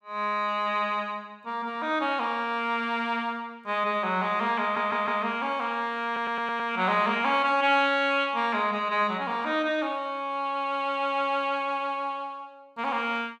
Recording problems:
audio stuttering; at 4.5 s and at 6 s

